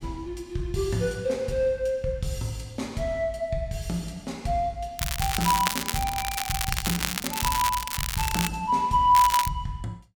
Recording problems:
crackle; from 5 to 8.5 s and at 9 s; loose cable, SNR 2 dB

